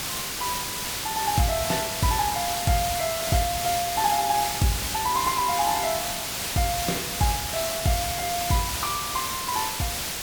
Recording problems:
background hiss; slope 0 dB per octave, SNR 1 dB

